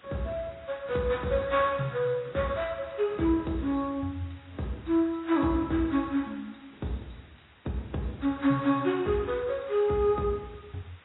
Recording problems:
codec artefacts; AAC, log-spectral distance 8 dB, nothing above 3.9 kHz
hiss; SNR 26 dB

